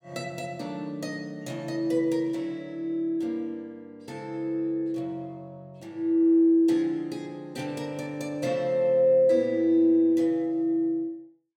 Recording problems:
none

